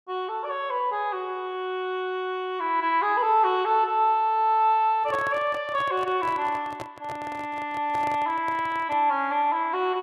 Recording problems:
microphone handling noise; from 5 to 9 s; peak -7 dB vs average level

